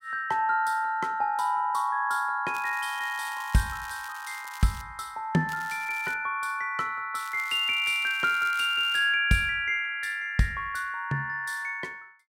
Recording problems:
crackle; from 2.5 to 5 s, at 5.5 s and from 7 to 9 s; loose cable, SNR 19 dB

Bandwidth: 16 kHz